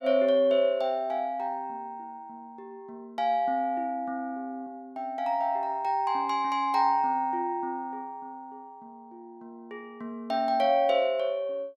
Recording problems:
none

